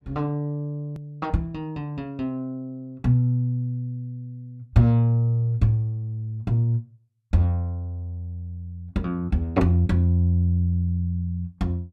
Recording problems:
hard cut with a click; at 1 s

